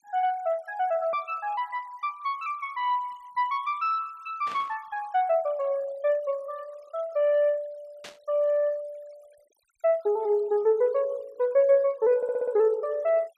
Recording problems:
denoising artefacts; signal-to-artefact ratio 27 dB
burst of static; at 4.5 s and at 8 s; peak -11 dB vs average level
stutter; at 12 s

